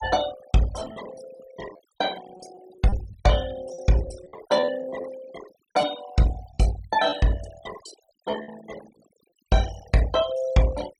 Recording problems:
denoising artefacts; signal-to-artefact ratio 16 dB
packet loss; 7% of the sound replaced, filled with repeated pitch periods

